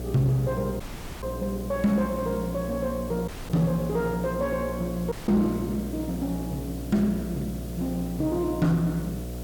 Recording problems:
distortion; soft clipping, signal-to-distortion ratio 10 dB
hum; 60 Hz, harmonics up to 720 Hz, SNR 9 dB
background hiss; SNR 15 dB
audio cutting out; at 1 s, at 3.5 s and at 5 s

